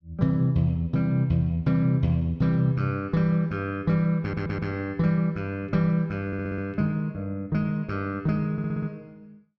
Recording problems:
stutter; at 4 s, at 6.5 s and at 8.5 s

